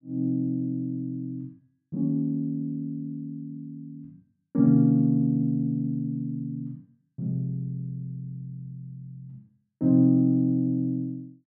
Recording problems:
none

